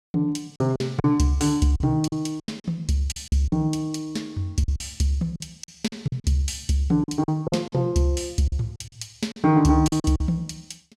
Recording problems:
lost packets; 11% of the sound replaced, filled with silence

